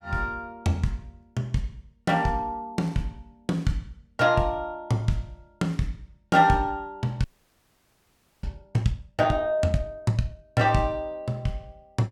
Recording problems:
frozen audio; at 7 s for 1 s

